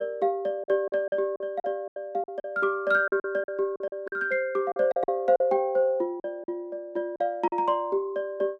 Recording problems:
packet loss; 11% of the sound replaced, filled with silence

